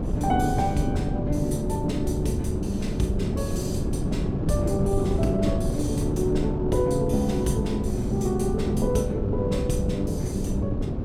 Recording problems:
wind noise; below 260 Hz, SNR 1 dB

